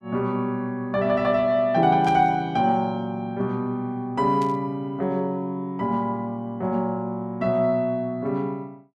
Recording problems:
burst of static; at 2 s and at 4.5 s; peak -13 dB vs average level

